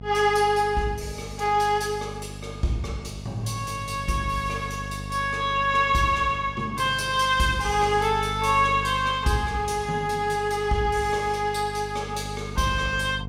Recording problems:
hum; 50 Hz, harmonics up to 750 Hz, SNR 13 dB

